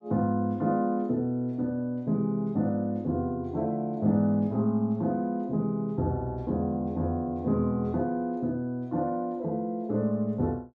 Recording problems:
none

